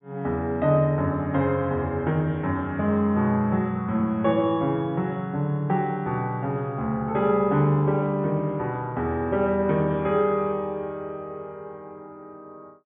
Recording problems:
low-pass filter; nothing above 4 kHz

